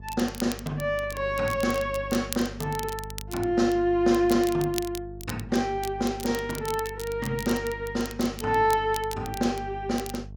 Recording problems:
electrical hum; 50 Hz, harmonics up to 450 Hz, SNR 15 dB
crackling; vinyl, SNR 14 dB

